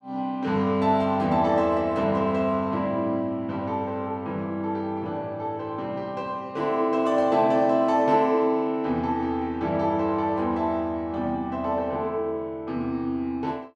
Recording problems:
none

